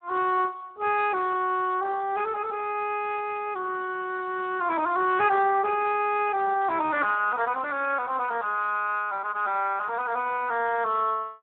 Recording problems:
telephone audio; 280 Hz to 3.6 kHz, Speex

